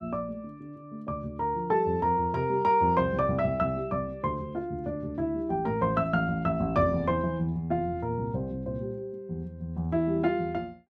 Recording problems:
none

